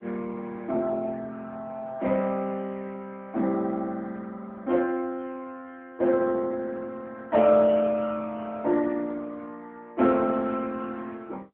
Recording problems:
telephone audio; 170 Hz to 3.6 kHz, AMR-NB

